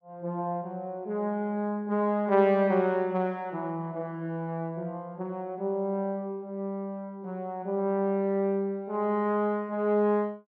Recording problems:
none

